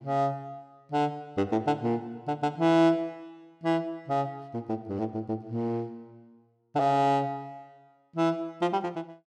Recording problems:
none

